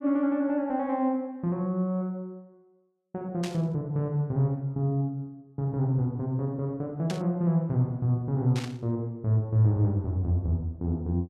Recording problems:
burst of static; at 3.5 s, at 7 s and at 8.5 s; peak -6 dB vs average level

